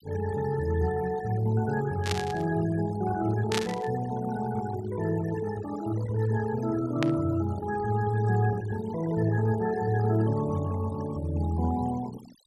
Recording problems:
noise reduction artefacts; signal-to-artefact ratio 16 dB
static burst; at 2 s, at 3.5 s and at 7 s; peak +3 dB vs average level

